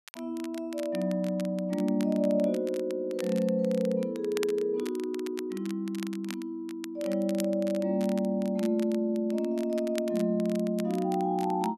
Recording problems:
crackling; vinyl, SNR 18 dB

